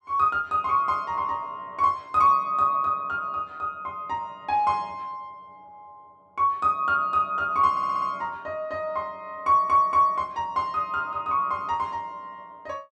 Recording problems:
stutter; at 7.5 s and at 9.5 s

